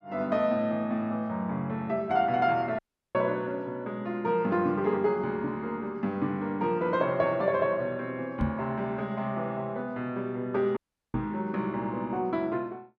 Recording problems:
audio cutting out; at 3 s and at 11 s
microphone thump; at 8.5 s and at 11 s; peak +5 dB vs average level

